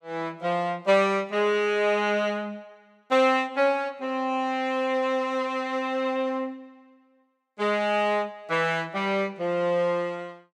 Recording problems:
none

